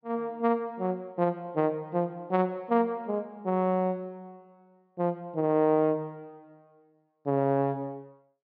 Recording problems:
treble missing; nothing above 5.5 kHz

